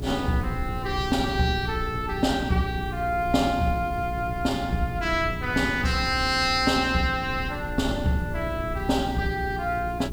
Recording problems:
hum; 60 Hz, harmonics up to 420 Hz, SNR 10 dB
background hiss; slope -2 dB per octave, SNR 26 dB
wind on the microphone; below 130 Hz, SNR 12 dB

